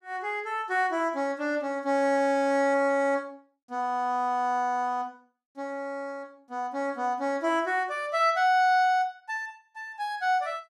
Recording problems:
none

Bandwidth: 15 kHz